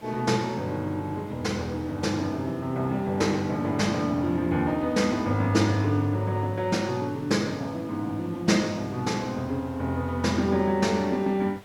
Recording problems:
hiss; slope -4 dB per octave, SNR 24 dB

